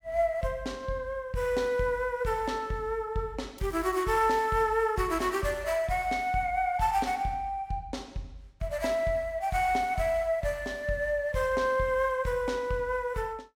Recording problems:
crackling; at 3.5 s; loose cable, SNR 25 dB

